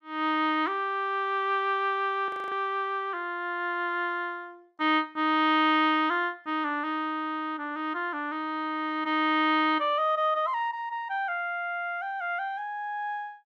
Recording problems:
audio freezing; at 2.5 s

